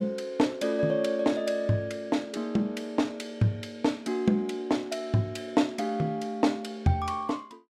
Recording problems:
none

